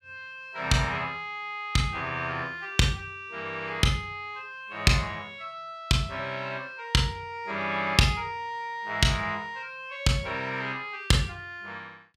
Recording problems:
none

